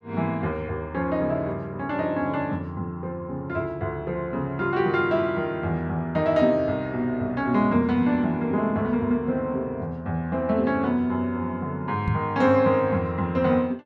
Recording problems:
microphone thump; at 12 s; peak +3 dB vs average level

